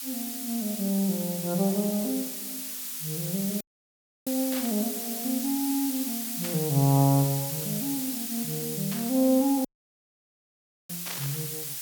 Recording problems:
background hiss; slope +5 dB per octave, SNR 4 dB
dropout; at 3.5 s for 0.5 s and at 9.5 s for 1 s
burst of static; 4 times, first at 4.5 s; peak -5 dB vs average level

